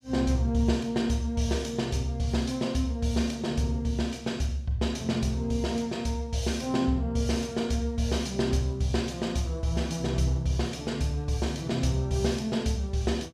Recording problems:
none

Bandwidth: 15 kHz